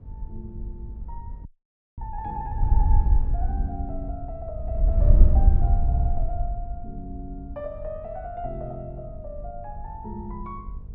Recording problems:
hum; 50 Hz, harmonics up to 500 Hz, SNR 12 dB
wind on the microphone; below 68 Hz, SNR -13 dB
frozen audio; at 1.5 s for 0.5 s
stutter; at 6 s

